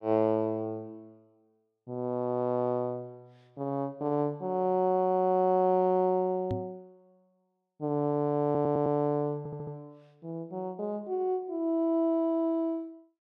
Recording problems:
knock on the microphone; at 6.5 s; peak -2 dB vs average level
audio stuttering; at 8.5 s and at 9.5 s

